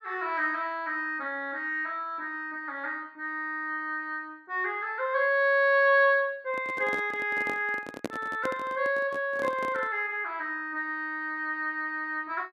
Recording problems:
microphone handling noise; from 6.5 to 10 s; peak -1 dB vs average level

